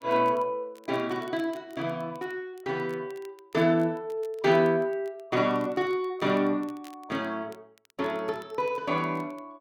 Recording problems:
crackling; vinyl, SNR 30 dB

